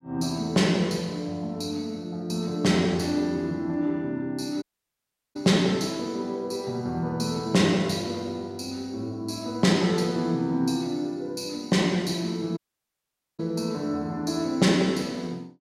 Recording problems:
audio cutting out; at 4.5 s for 0.5 s and at 13 s for 1 s

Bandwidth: 16 kHz